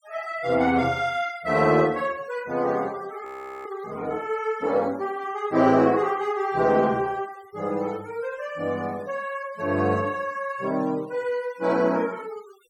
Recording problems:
noise reduction artefacts; signal-to-artefact ratio 25 dB
frozen audio; at 3.5 s

